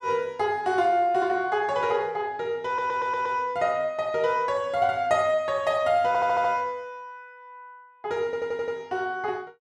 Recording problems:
audio stuttering; at 2.5 s, at 6 s and at 8.5 s

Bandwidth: 12.5 kHz